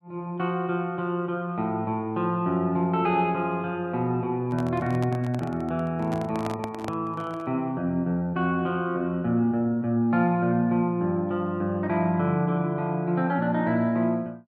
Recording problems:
microphone handling noise; from 4.5 to 7.5 s; peak -4 dB vs average level

